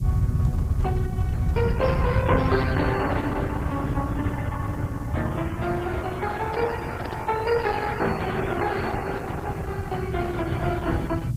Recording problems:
codec artefacts; MP3, then Opus, log-spectral distance 3 dB
hiss; SNR 26 dB
rumble; below 130 Hz, SNR -1 dB
microphone handling noise; from 6.5 to 9.5 s; peak -1 dB vs average level

